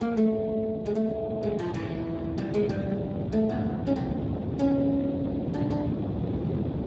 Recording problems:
codec artefacts; Speex, log-spectral distance 3 dB
wind on the microphone; below 360 Hz, SNR 3 dB

